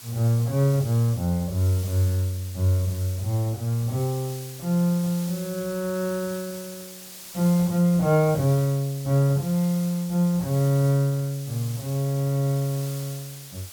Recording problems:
hiss; slope +1 dB per octave, SNR 16 dB

